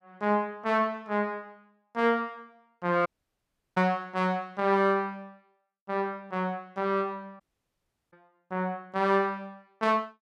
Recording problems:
dropout; at 3 s for 0.5 s and at 7.5 s for 0.5 s

